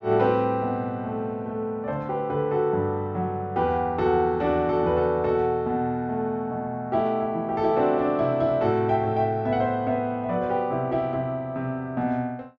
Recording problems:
low-pass filter; nothing above 7.7 kHz

